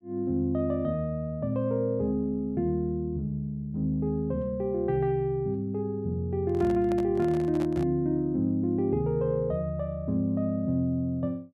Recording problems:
microphone handling noise; from 6.5 to 8 s; peak -7 dB vs average level

